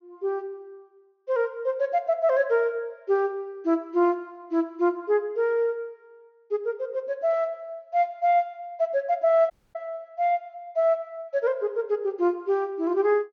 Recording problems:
treble cut off; nothing above 6.5 kHz
dropout; at 9.5 s

